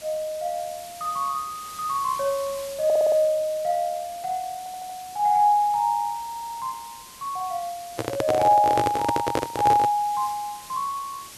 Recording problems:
hiss; slope 0 dB per octave, SNR 17 dB
stutter; at 3 s, at 4.5 s and at 6 s
microphone handling noise; from 8 to 10 s; peak +2 dB vs average level

